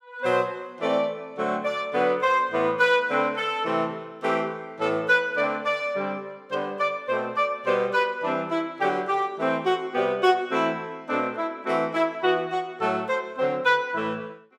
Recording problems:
none

